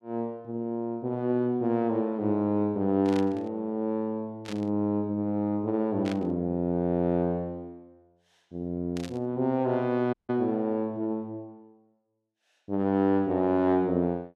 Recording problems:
static burst; 4 times, first at 3 s; peak -8 dB vs average level
audio cutting out; at 10 s

